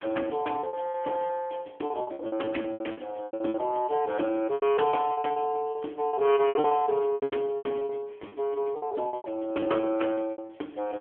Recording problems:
telephone audio; 260 Hz to 3.3 kHz, AMR-NB
packet loss; 18% of the sound replaced, filled with repeated pitch periods

